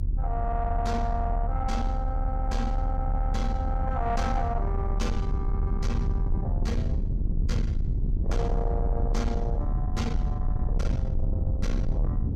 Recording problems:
distorted audio; soft clipping, signal-to-distortion ratio 11 dB
rumble; below 82 Hz, strongest tone 36 Hz, SNR -4 dB

